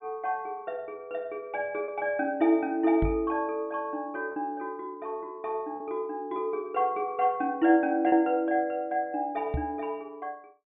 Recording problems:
treble missing; nothing above 4 kHz
lost packets; 1.5% of the sound replaced, filled with repeated pitch periods
microphone bump; at 3 s and at 9.5 s; peak +2 dB vs average level

